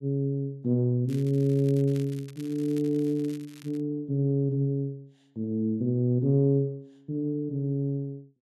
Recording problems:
crackle; from 1 to 4 s; loose cable, SNR 24 dB

